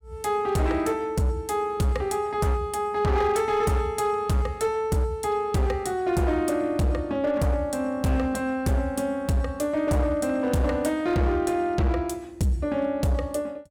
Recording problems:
distortion; hard clipping, signal-to-distortion ratio 12 dB

